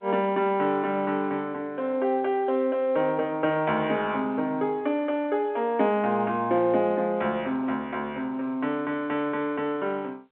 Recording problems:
phone line; 220 Hz to 3.4 kHz, G.711

